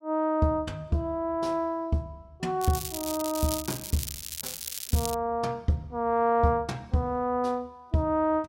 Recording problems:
crackling; from 2.5 to 5 s; loose cable, SNR 6 dB

